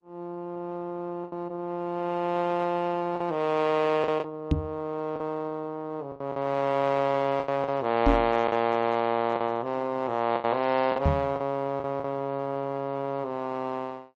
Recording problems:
lossy compression; MP3, then Opus, log-spectral distance 2 dB
packet loss; 6% of the sound replaced, filled with the last packet
microphone thump; at 4.5 s, at 8 s and at 11 s; peak +8 dB vs average level

